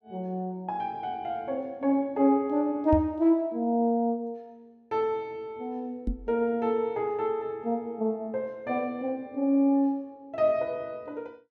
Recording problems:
microphone bump; at 3 s and at 6 s; peak +3 dB vs average level

